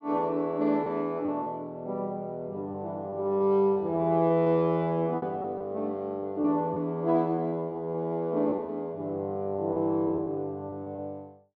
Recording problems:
packet loss; 5% of the sound replaced, filled with repeated pitch periods

